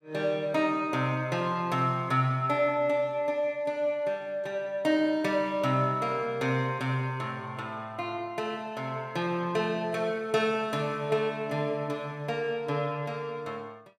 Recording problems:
none

